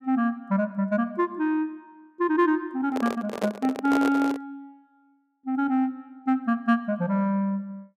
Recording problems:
microphone handling noise; from 3 to 4.5 s; peak 0 dB vs average level

